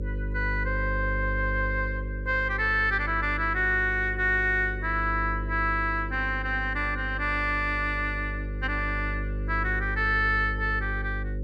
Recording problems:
electrical hum; 50 Hz, harmonics up to 550 Hz, SNR 6 dB

